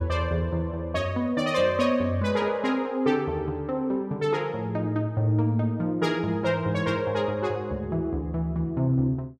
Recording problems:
none

